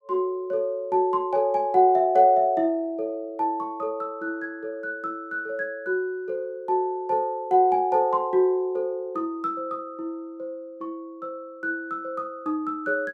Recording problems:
none

